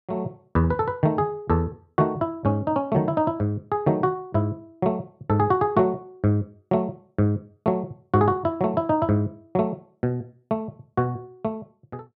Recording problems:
none

